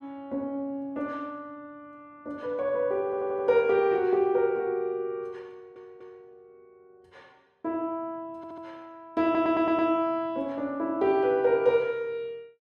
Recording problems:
stutter; 4 times, first at 3 s

